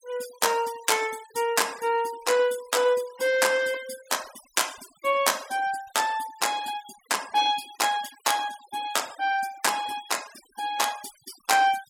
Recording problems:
noise reduction artefacts; signal-to-artefact ratio 18 dB

